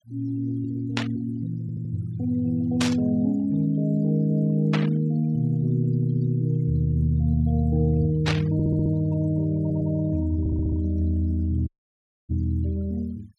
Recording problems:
denoising artefacts; signal-to-artefact ratio 26 dB
burst of static; 4 times, first at 1 s; peak +1 dB vs average level
stutter; 4 times, first at 1.5 s
audio cutting out; at 12 s for 0.5 s

